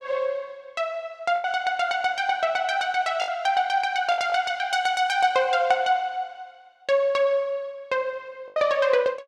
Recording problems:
lost packets; 3% of the sound replaced, filled with the last packet

